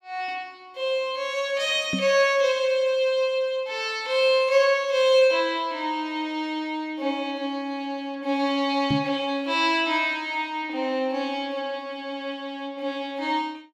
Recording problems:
microphone bump; at 2 s and at 9 s; peak +2 dB vs average level

